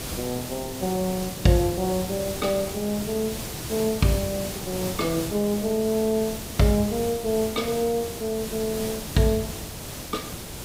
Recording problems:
hiss; SNR 7 dB

